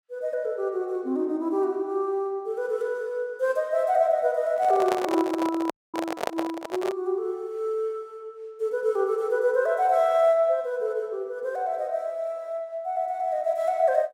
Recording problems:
microphone handling noise; from 4.5 to 7 s; peak +2 dB vs average level
frozen audio; at 5.5 s

